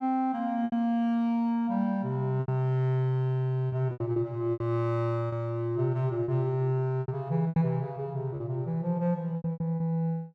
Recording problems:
packet loss; 9% of the sound replaced, filled with repeated pitch periods

